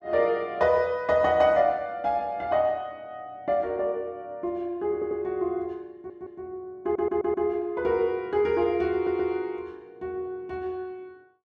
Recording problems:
stutter; 4 times, first at 5 s

